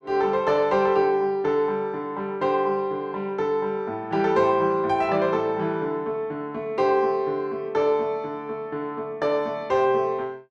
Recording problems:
none

